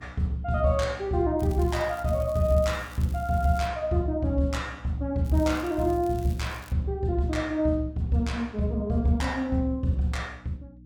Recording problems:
electrical hum; 60 Hz, harmonics up to 300 Hz, SNR 22 dB
crackling; from 1.5 to 3.5 s and from 5 to 6.5 s; loose cable, SNR 24 dB

